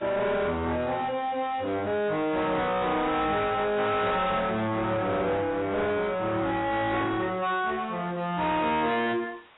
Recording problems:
codec artefacts; AAC, log-spectral distance 7 dB, nothing above 3.8 kHz
distortion; soft clipping, signal-to-distortion ratio 6 dB
hiss; SNR 22 dB

